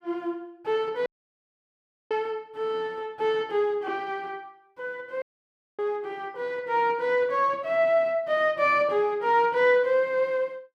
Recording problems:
dropout; at 1 s for 1 s and at 5 s for 0.5 s

